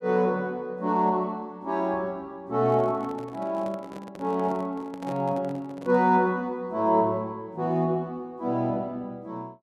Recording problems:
microphone handling noise; from 2.5 to 6 s; peak -9 dB vs average level

